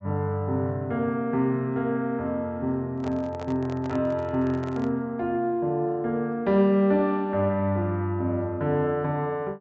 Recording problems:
low-pass filter; nothing above 8 kHz
handling noise; from 3 to 5 s; peak -9 dB vs average level

